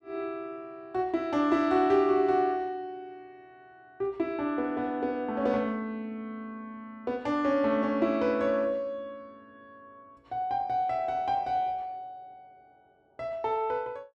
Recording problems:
none

